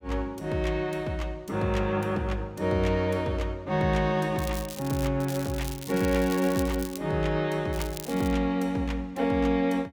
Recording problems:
crackling; 4 times, first at 4.5 s; loose cable, SNR 13 dB

